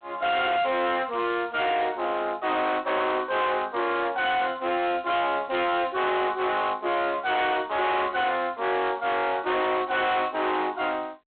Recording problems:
phone line; 280 Hz to 3.7 kHz, G.726
distorted audio; hard clipping, signal-to-distortion ratio 6 dB

